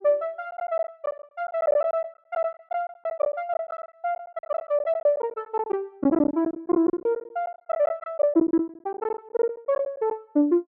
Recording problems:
lost packets; 15% of the sound replaced, filled with silence

